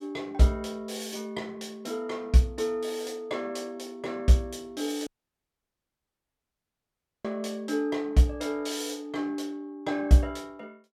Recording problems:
audio cutting out; at 5 s for 2 s

